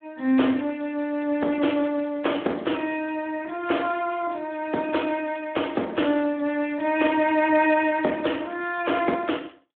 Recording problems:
telephone audio; 190 Hz to 3.4 kHz, Speex

